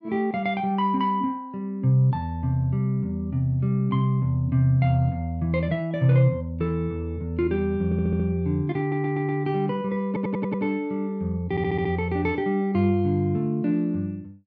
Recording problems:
audio stuttering; 4 times, first at 8 s

